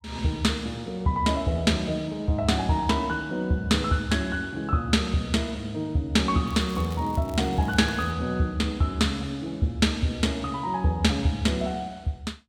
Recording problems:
crackle; from 6.5 to 8 s; loose cable, SNR 24 dB

